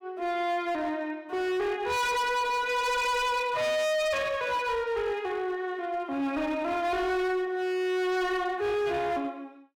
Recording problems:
distorted audio; hard clipping, signal-to-distortion ratio 7 dB

